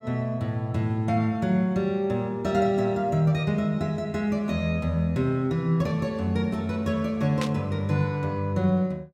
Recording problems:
static burst; at 7.5 s; peak -3 dB vs average level

